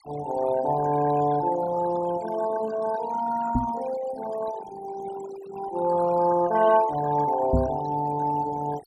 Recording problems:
noise reduction artefacts; signal-to-artefact ratio 14 dB
microphone thump; at 3.5 s and at 7.5 s; peak +5 dB vs average level

